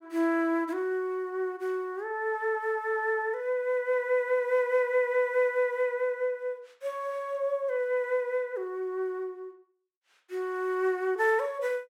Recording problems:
none

